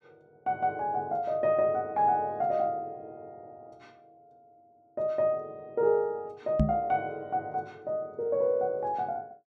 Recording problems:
microphone thump; at 6.5 s; peak +7 dB vs average level

